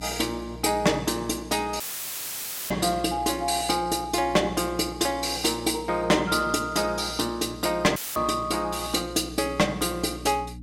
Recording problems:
distortion; hard clipping, uneven, signal-to-distortion ratio 10 dB
hum; 60 Hz, harmonics up to 300 Hz, SNR 17 dB
audio cutting out; at 2 s for 1 s and at 8 s; filled with static

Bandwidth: 16.5 kHz